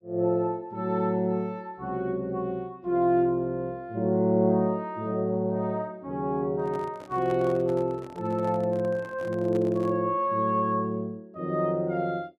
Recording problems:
microphone handling noise; from 6.5 to 10 s; peak -11 dB vs average level

